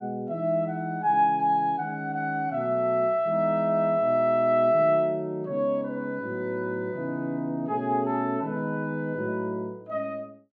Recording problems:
none

